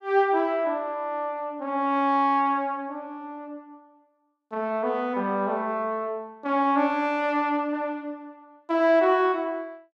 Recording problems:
none

